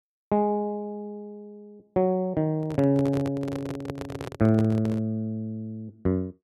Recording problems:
handling noise; from 2.5 to 5 s; peak -4 dB vs average level

